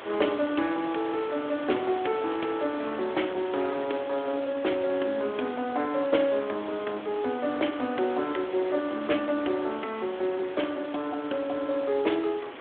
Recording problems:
phone line; 240 Hz to 3.5 kHz, Speex
hiss; SNR 12 dB

